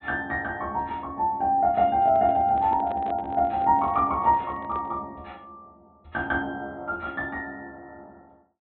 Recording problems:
treble cut off; nothing above 4 kHz
handling noise; from 2 to 5 s; peak -10 dB vs average level

